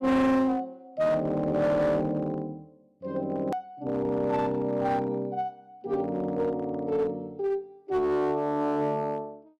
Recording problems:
distortion; hard clipping, uneven, signal-to-distortion ratio 7 dB
hard cut with a click; at 3.5 s

